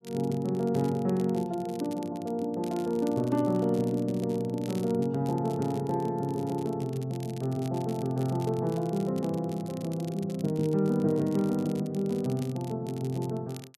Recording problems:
crackle; vinyl, SNR 22 dB

